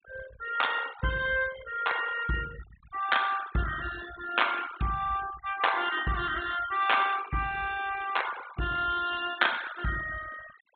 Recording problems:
treble missing; nothing above 4 kHz
noise reduction artefacts; signal-to-artefact ratio 14 dB

